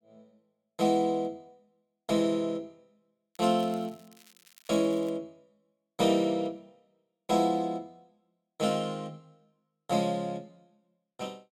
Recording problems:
crackling; from 3.5 to 5 s; loose cable, SNR 26 dB

